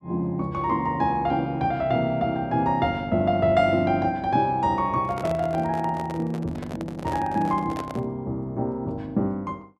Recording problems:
handling noise; from 5 to 8 s; peak -5 dB vs average level

